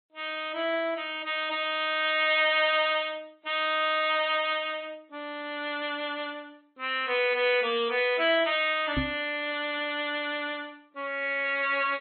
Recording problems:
treble missing; nothing above 3.5 kHz
codec artefacts; MP3, log-spectral distance 5 dB
microphone thump; at 9 s; peak +1 dB vs average level

